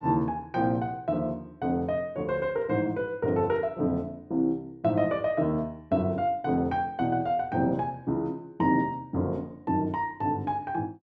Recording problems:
none

